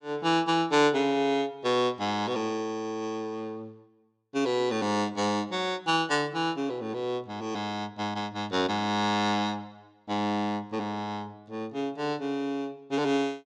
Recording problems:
none

